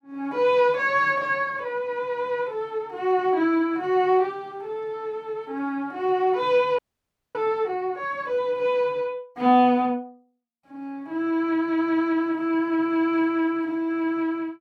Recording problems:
audio freezing; at 7 s for 0.5 s

